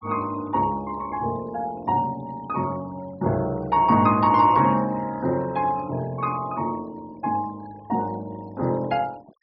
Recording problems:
treble missing; nothing above 5.4 kHz
noise reduction artefacts; signal-to-artefact ratio 26 dB

